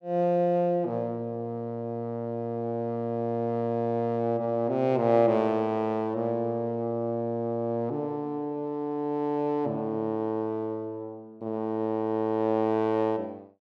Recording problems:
none

